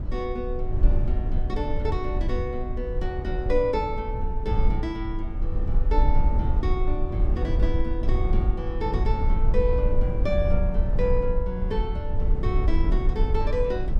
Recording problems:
rumble; below 60 Hz, SNR -3 dB

